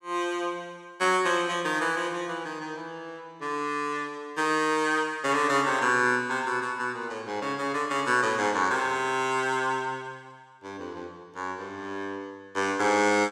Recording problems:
none

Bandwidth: 16.5 kHz